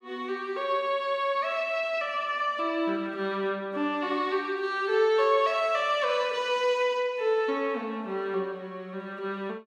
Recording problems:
none

